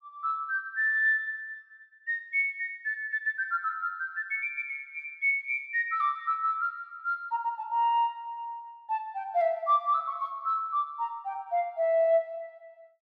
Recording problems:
none

